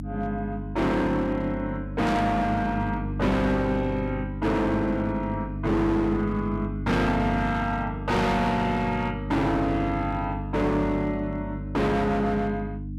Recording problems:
distorted audio; hard clipping, signal-to-distortion ratio 6 dB
hum; 50 Hz, harmonics up to 300 Hz, SNR 7 dB
burst of static; at 2 s; peak -9 dB vs average level

